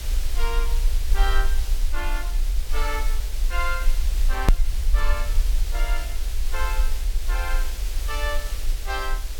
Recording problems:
background hiss; SNR 5 dB
low-frequency rumble; below 44 Hz, SNR -5 dB
click at an edit; at 4.5 s

